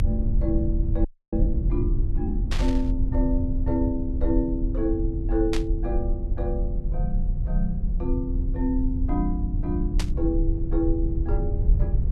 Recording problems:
low-frequency rumble; below 68 Hz, SNR -2 dB
audio freezing; at 1 s
static burst; at 2.5 s, at 5.5 s and at 10 s; peak +1 dB vs average level

